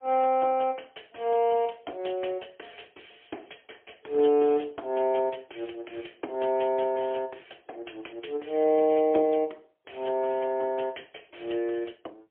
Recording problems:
telephone audio; 260 Hz to 3.4 kHz, AMR-NB, then MP3

